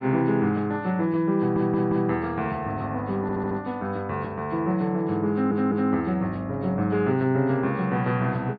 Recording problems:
treble missing; nothing above 4.8 kHz
stutter; at 1.5 s, at 3 s and at 5.5 s

